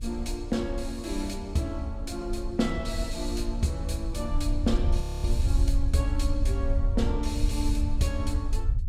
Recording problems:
low-frequency rumble; below 68 Hz, SNR -1 dB
audio freezing; at 5 s

